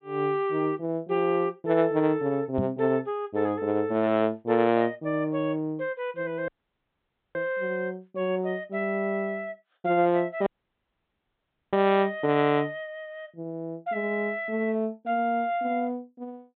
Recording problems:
low-pass filter; nothing above 4 kHz
knock on the microphone; at 2.5 s; peak +3 dB vs average level
audio cutting out; at 6.5 s for 1 s and at 10 s for 1.5 s

